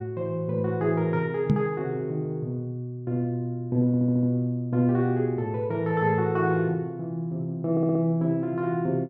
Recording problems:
microphone thump; at 1.5 s; peak +7 dB vs average level
stutter; at 4 s and at 7.5 s

